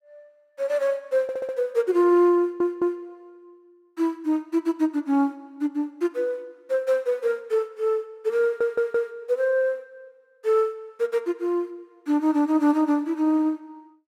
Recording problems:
stutter; at 1 s, at 2.5 s and at 8.5 s

